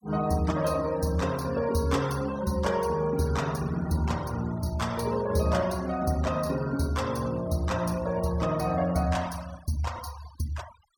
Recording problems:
denoising artefacts; signal-to-artefact ratio 18 dB

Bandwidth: 18 kHz